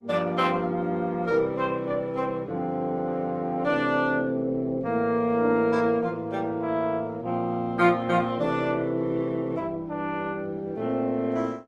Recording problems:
codec artefacts; Opus, log-spectral distance 2 dB

